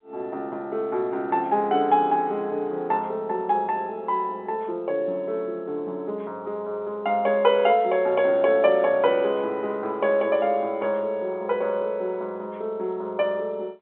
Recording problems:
telephone audio; 260 Hz to 3.6 kHz, G.711

